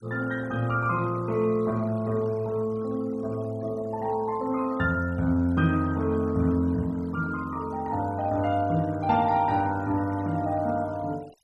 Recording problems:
noise reduction artefacts; signal-to-artefact ratio 23 dB

